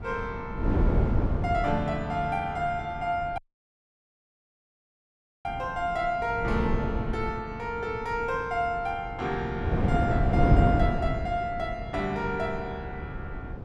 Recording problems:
wind on the microphone; below 260 Hz, SNR -1 dB
audio cutting out; at 3.5 s for 2 s

